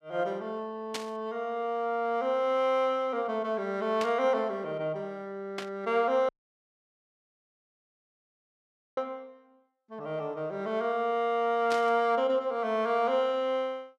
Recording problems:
burst of static; 4 times, first at 1 s; peak -1 dB vs average level
dropout; at 6.5 s for 2.5 s

